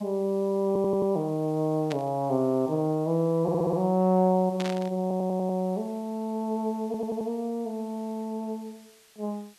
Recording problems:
background hiss; slope +1 dB per octave, SNR 28 dB
audio stuttering; 4 times, first at 0.5 s
burst of static; at 2 s and at 4.5 s; peak -5 dB vs average level

